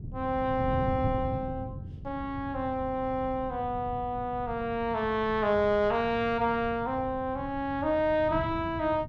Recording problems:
wind on the microphone; below 160 Hz, SNR 11 dB

